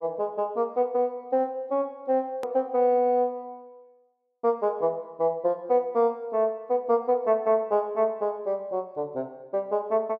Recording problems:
hard cut with a click; at 2.5 s

